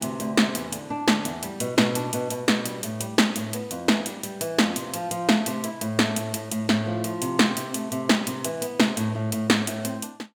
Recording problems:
none

